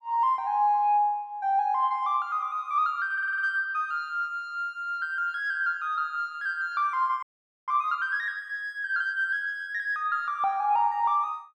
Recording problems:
audio stuttering; at 3 s
audio freezing; at 7 s

